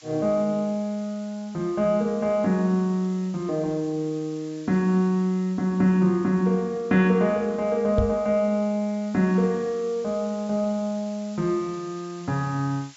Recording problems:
treble missing; nothing above 8 kHz
background hiss; slope +4 dB per octave, SNR 25 dB
microphone bump; at 8 s; peak +3 dB vs average level

